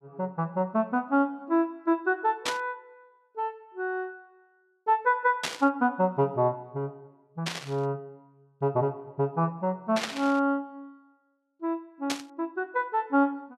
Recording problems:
static burst; 5 times, first at 2.5 s; peak +3 dB vs average level

